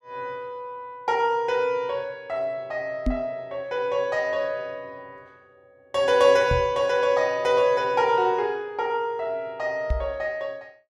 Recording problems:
knock on the microphone; at 3 s, at 6.5 s and at 10 s; peak +2 dB vs average level

